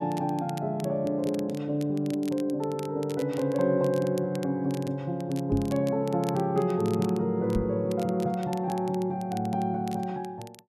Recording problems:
crackle; vinyl, SNR 21 dB
microphone bump; at 5.5 s and at 7.5 s; peak +3 dB vs average level

